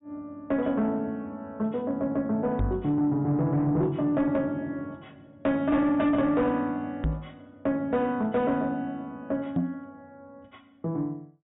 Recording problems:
treble cut off; nothing above 4 kHz
distorted audio; soft clipping, signal-to-distortion ratio 12 dB
microphone bump; at 2.5 s, at 7 s and at 9.5 s; peak +4 dB vs average level

